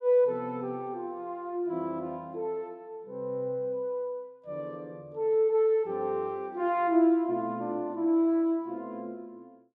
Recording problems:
none

